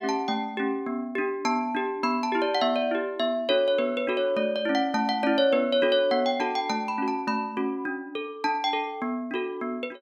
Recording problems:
none

